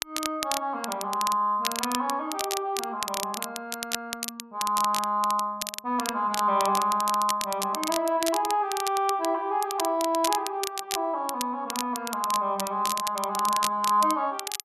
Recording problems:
crackling; vinyl, SNR 6 dB

